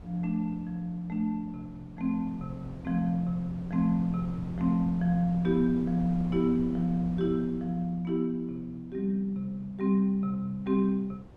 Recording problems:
wind noise; below 290 Hz, SNR 16 dB

